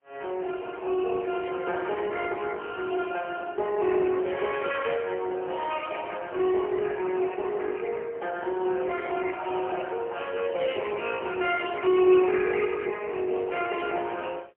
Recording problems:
telephone audio; 320 Hz to 3.1 kHz, AMR-NB, then MP3

